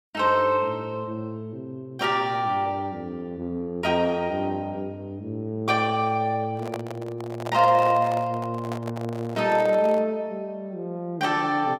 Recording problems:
microphone handling noise; from 6.5 to 10 s; peak -5 dB vs average level

